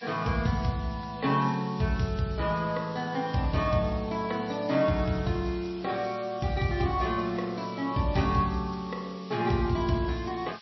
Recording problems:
codec artefacts; MP3, log-spectral distance 9 dB, nothing above 5.7 kHz
background hiss; slope +2 dB per octave, SNR 21 dB

